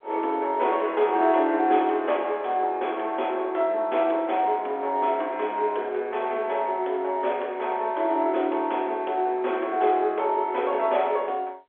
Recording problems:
phone line; 300 Hz to 3.6 kHz, G.711

